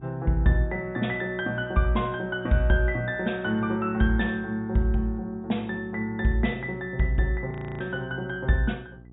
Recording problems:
treble cut off; nothing above 4 kHz
electrical hum; 60 Hz, harmonics up to 780 Hz, SNR 23 dB
frozen audio; at 7.5 s

